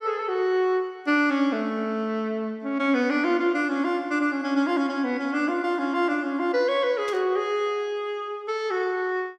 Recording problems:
burst of static; at 7 s; peak -11 dB vs average level

